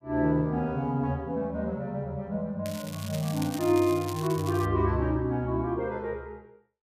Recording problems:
crackling; from 2.5 to 4.5 s; loose cable, SNR 14 dB

